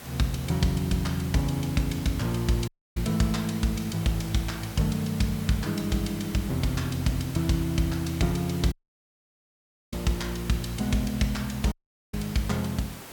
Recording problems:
background hiss; slope -3 dB per octave, SNR 13 dB
audio cutting out; at 2.5 s, at 8.5 s for 1 s and at 12 s

